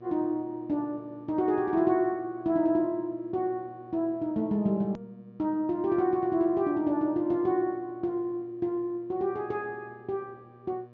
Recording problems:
treble missing; nothing above 6.8 kHz
hum; 60 Hz, harmonics up to 1.2 kHz, SNR 25 dB
hard cut with a click; at 5 s

